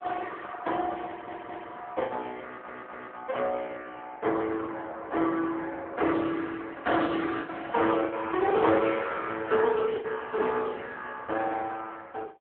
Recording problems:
phone line; 280 Hz to 3.5 kHz, AMR-NB
packet loss; 5% of the sound replaced, filled with the last packet
audio stuttering; at 1 s and at 2.5 s

